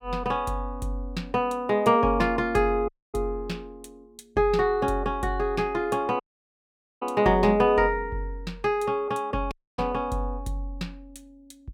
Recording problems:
dropout; at 3 s, at 6 s for 1 s and at 9.5 s

